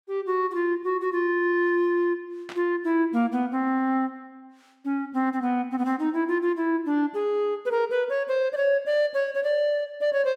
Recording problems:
static burst; at 2.5 s; peak -10 dB vs average level

